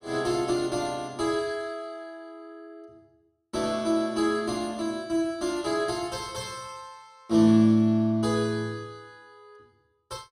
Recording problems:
none

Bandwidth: 15.5 kHz